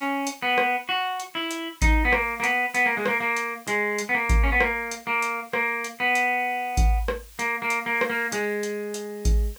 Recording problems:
background hiss; slope +2 dB per octave, SNR 24 dB

